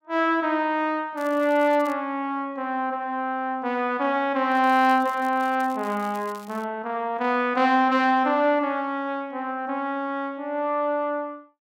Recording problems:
crackle; at 1 s and from 4.5 to 6.5 s; loose cable, SNR 25 dB

